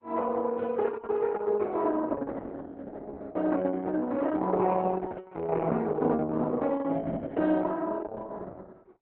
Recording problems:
lossy compression; AAC, then Opus, log-spectral distance 3 dB

